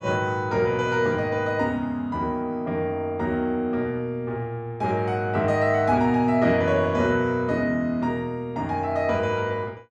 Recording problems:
none

